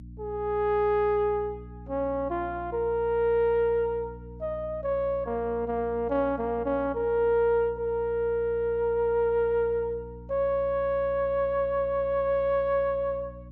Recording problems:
mains hum; 60 Hz, harmonics up to 300 Hz, SNR 17 dB

